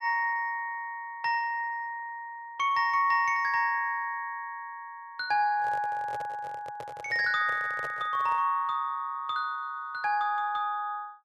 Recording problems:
handling noise; from 5.5 to 8.5 s; peak -8 dB vs average level

